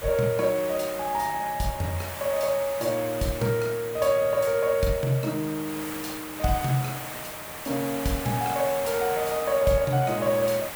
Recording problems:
background hiss; SNR 10 dB

